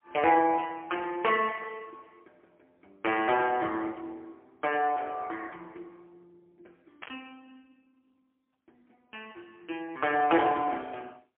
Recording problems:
phone line; 300 Hz to 3.2 kHz, AMR-NB, then MP3
burst of static; at 3 s and at 7 s; peak -9 dB vs average level

